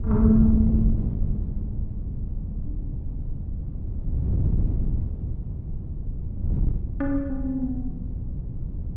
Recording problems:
wind noise; below 120 Hz, SNR 3 dB

